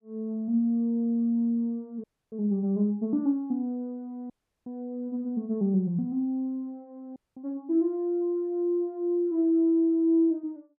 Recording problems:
dropout; at 2 s, at 4.5 s and at 7 s

